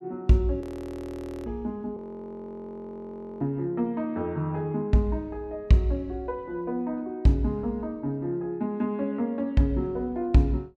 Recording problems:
audio freezing; at 0.5 s for 1 s and at 2 s for 1.5 s

